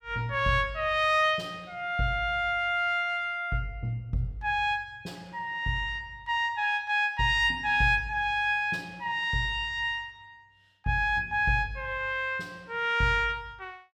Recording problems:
none

